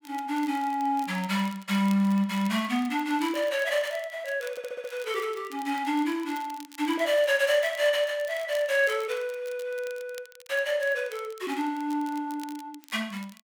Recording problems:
crackling; vinyl, SNR 22 dB
stutter; at 4.5 s

